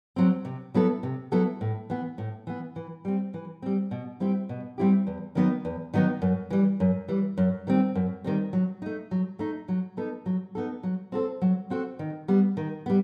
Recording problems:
none

